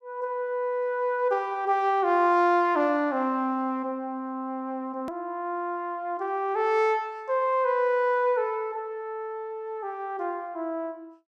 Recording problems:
hard cut with a click; at 5 s

